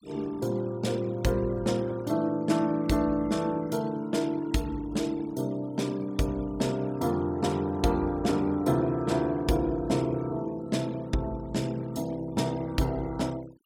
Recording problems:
denoising artefacts; signal-to-artefact ratio 23 dB

